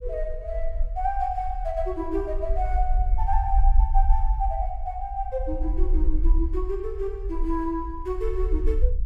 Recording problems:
rumble; below 50 Hz, strongest tone 26 Hz, SNR -2 dB

